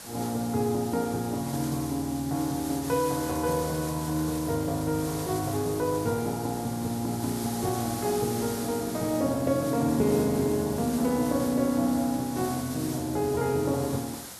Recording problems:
background hiss; SNR 11 dB

